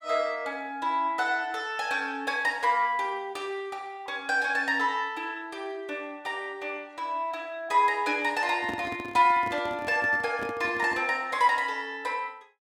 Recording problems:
handling noise; from 8.5 to 11 s; peak -6 dB vs average level

